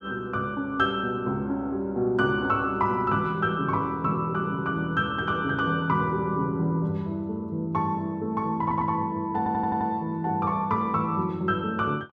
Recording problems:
stutter; at 8.5 s and at 9.5 s

